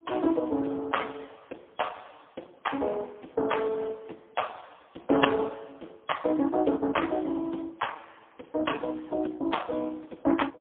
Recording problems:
telephone audio; 240 Hz to 3.4 kHz, AMR-NB, then MP3

